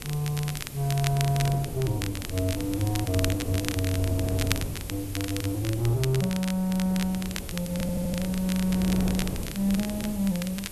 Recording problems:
electrical hum; 60 Hz, harmonics up to 1 kHz, SNR 29 dB
background hiss; SNR 14 dB
wind on the microphone; below 300 Hz, SNR 9 dB
crackle; vinyl, SNR 9 dB
audio stuttering; at 7.5 s

